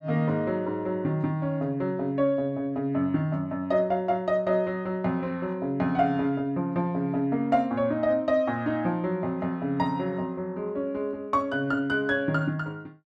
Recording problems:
none

